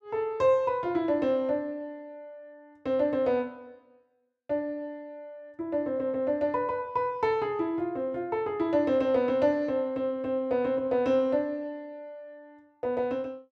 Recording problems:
none

